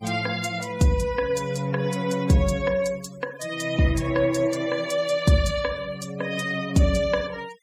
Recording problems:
denoising artefacts; signal-to-artefact ratio 20 dB

